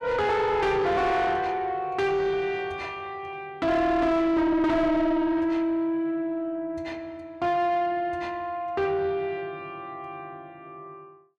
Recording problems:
distortion; soft clipping, signal-to-distortion ratio 7 dB

